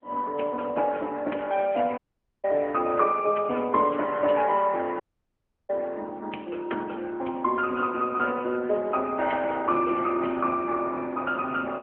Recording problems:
phone line; 260 Hz to 3.1 kHz, AMR-NB
dropout; at 2 s and at 5 s for 0.5 s

